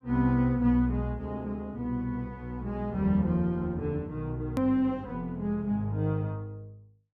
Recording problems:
click at an edit; at 4.5 s

